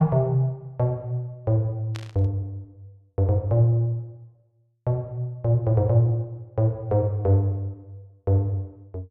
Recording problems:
burst of static; at 2 s; peak -10 dB vs average level

